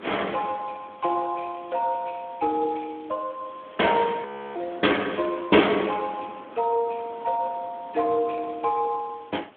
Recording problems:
telephone audio; 220 Hz to 3.4 kHz, Speex
background hiss; SNR 27 dB
wind noise; below 1.1 kHz, SNR 22 dB
audio freezing; at 4.5 s

